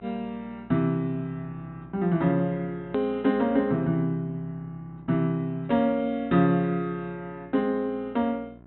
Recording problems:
low-pass filter; nothing above 4 kHz
hum; 60 Hz, harmonics up to 1.4 kHz, SNR 24 dB
click at an edit; at 3 s

